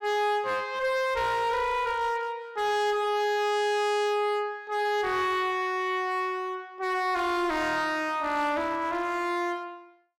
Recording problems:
distortion; hard clipping, uneven, signal-to-distortion ratio 7 dB

